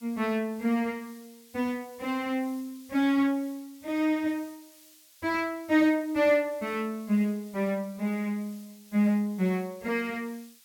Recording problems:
background hiss; slope +4 dB per octave, SNR 24 dB

